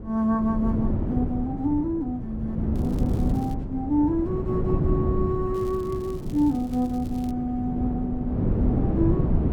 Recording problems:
wind noise; below 250 Hz, SNR 1 dB
crackle; at 3 s and from 5.5 to 7.5 s; loose cable, SNR 25 dB

